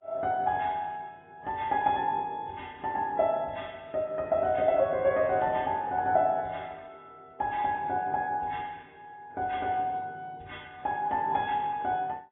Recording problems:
lossy compression; MP2, then AAC, log-spectral distance 2 dB, nothing above 3.5 kHz

